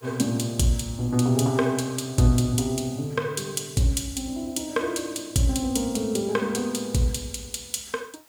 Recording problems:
background hiss; SNR 29 dB

